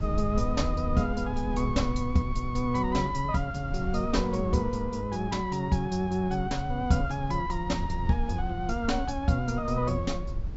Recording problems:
low-pass filter; nothing above 7.6 kHz
codec artefacts; Vorbis, log-spectral distance 2 dB
rumble; below 76 Hz, SNR 7 dB

